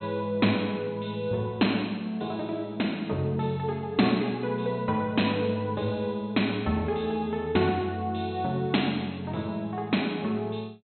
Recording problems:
treble missing; nothing above 4.2 kHz

